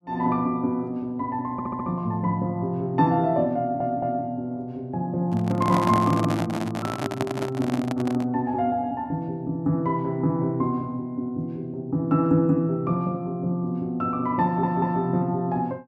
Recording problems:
audio stuttering; at 1.5 s, at 3.5 s and at 14 s
microphone handling noise; from 5.5 to 8.5 s; peak +2 dB vs average level

